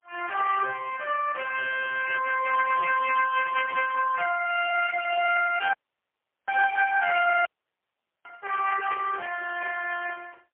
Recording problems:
phone line; 470 Hz to 2.8 kHz, AMR-NB, then MP3
audio cutting out; at 5.5 s for 0.5 s and at 7.5 s for 1 s

